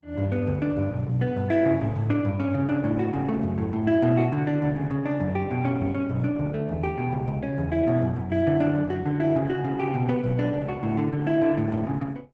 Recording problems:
lossy compression; Opus, log-spectral distance 2 dB, nothing above 7.3 kHz

